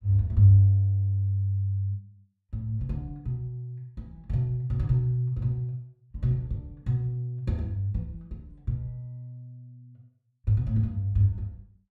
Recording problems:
none

